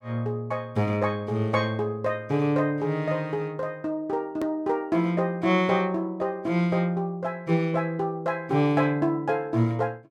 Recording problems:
click at an edit; at 4.5 s

